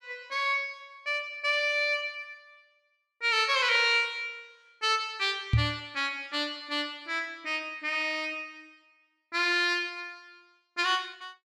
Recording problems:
microphone bump; at 5.5 s; peak +7 dB vs average level

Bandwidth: 14 kHz